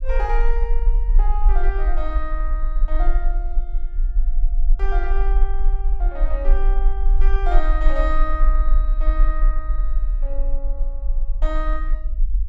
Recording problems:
rumble; below 38 Hz, strongest tone 20 Hz, SNR -8 dB

